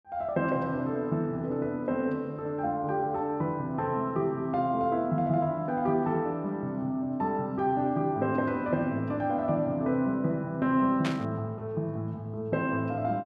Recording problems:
static burst; at 11 s; peak -1 dB vs average level

